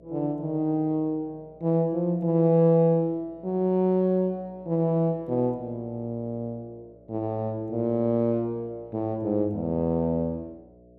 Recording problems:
electrical hum; 60 Hz, harmonics up to 660 Hz, SNR 28 dB

